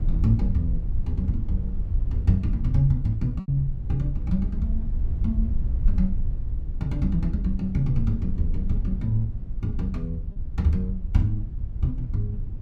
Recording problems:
rumble; below 68 Hz, SNR 3 dB
lost packets; 1.2% of the sound replaced, filled with repeated pitch periods

